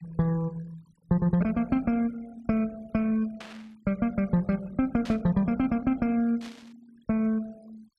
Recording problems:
denoising artefacts; signal-to-artefact ratio 26 dB
static burst; at 3.5 s, at 5 s and at 6.5 s; peak -11 dB vs average level

